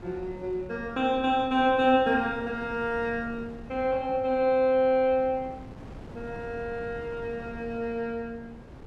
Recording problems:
wind on the microphone; below 400 Hz, SNR 18 dB

